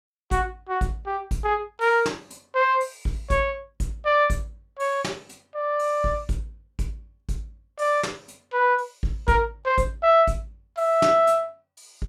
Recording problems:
none

